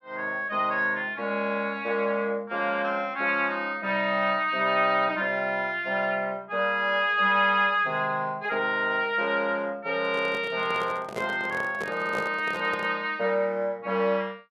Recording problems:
handling noise; from 10 to 13 s; peak -3 dB vs average level

